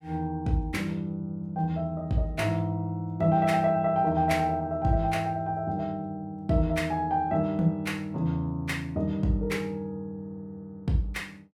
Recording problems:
none

